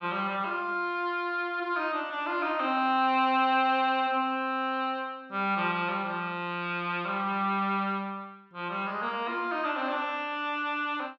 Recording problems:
none

